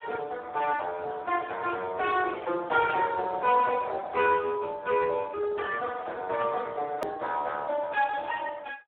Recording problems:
telephone audio; 320 Hz to 3.4 kHz, Speex
hard cut with a click; at 7 s

